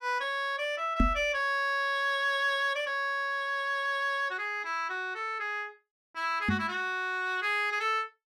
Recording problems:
microphone thump; at 1 s and at 6.5 s; peak +7 dB vs average level

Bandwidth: 15 kHz